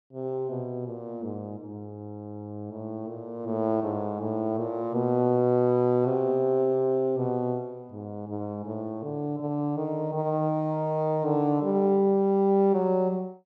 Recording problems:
none

